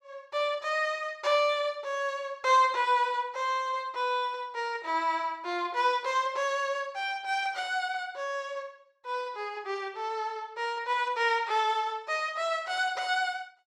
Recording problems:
none

